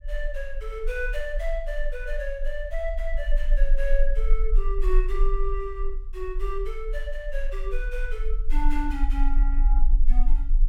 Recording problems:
rumble; below 34 Hz, strongest tone 18 Hz, SNR -5 dB

